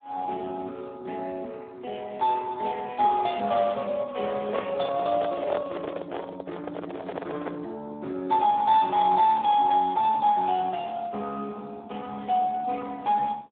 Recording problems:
telephone audio; 300 Hz to 2.9 kHz, Speex
handling noise; from 4.5 to 7.5 s; peak -1 dB vs average level

